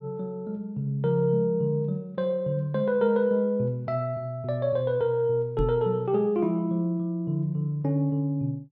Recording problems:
microphone thump; at 5.5 s; peak +1 dB vs average level

